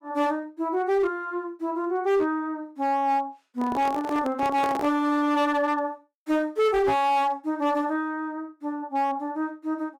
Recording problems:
distortion; hard clipping, uneven, signal-to-distortion ratio 12 dB
microphone handling noise; from 3.5 to 5 s; peak -3 dB vs average level

